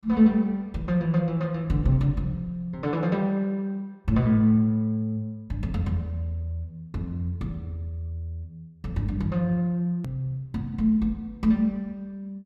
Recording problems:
hard cut with a click; at 10 s

